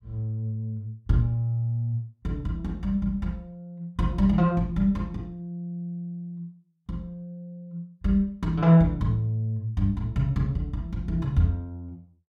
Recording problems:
none

